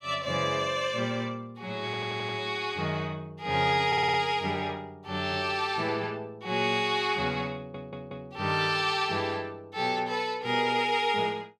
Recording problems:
audio stuttering; at 2 s, at 4 s and at 7.5 s

